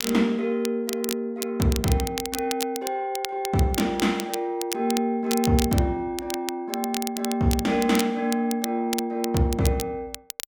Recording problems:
crackle; vinyl, SNR 9 dB

